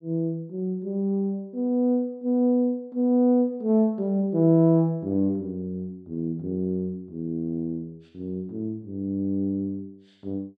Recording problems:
none

